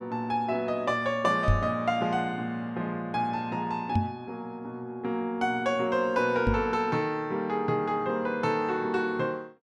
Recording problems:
knock on the microphone; at 1.5 s, at 4 s and at 6.5 s; peak +7 dB vs average level

